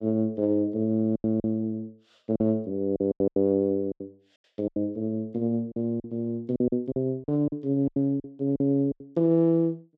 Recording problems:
lost packets; 12% of the sound replaced, filled with silence

